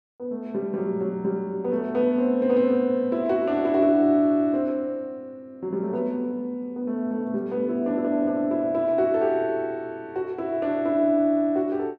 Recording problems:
none

